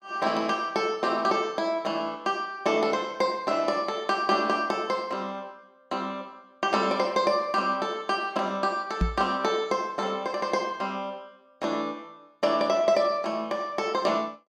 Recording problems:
microphone thump; at 9 s; peak +5 dB vs average level

